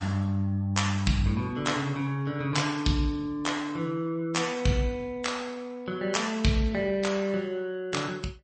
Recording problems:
lossy codec; MP3, log-spectral distance 2 dB, nothing above 8.2 kHz

